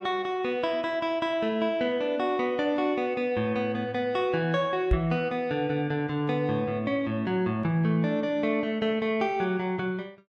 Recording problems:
microphone thump; at 5 s; peak +5 dB vs average level

